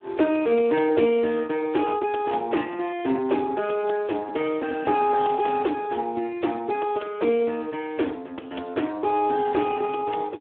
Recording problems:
phone line; 260 Hz to 3.4 kHz, Speex

